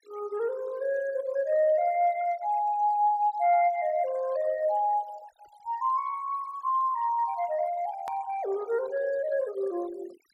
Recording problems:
noise reduction artefacts; signal-to-artefact ratio 23 dB
hard cut with a click; at 8 s

